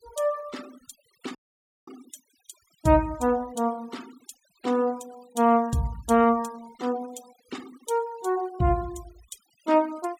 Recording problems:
denoising artefacts; signal-to-artefact ratio 24 dB
dropout; at 1.5 s for 0.5 s

